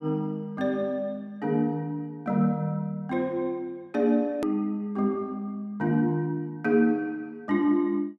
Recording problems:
edit click; at 4.5 s

